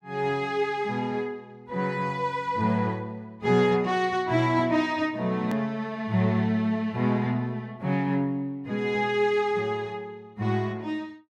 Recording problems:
edit click; at 5.5 s

